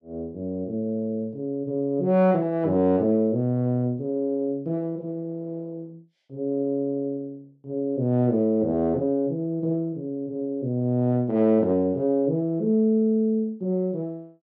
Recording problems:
none

